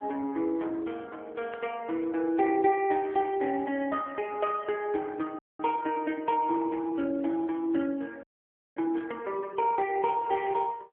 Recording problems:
phone line; 240 Hz to 2.8 kHz, AMR-NB
static burst; at 1.5 s and at 9 s; peak -15 dB vs average level
audio freezing; at 5.5 s and at 8 s for 0.5 s

